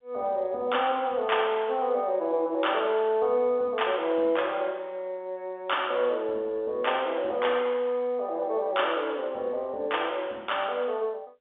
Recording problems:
telephone audio; 240 Hz to 3.6 kHz, G.711

